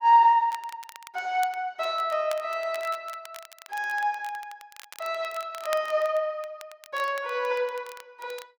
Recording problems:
crackling; vinyl, SNR 19 dB

